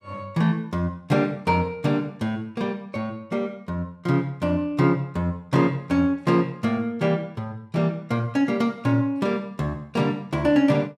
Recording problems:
none

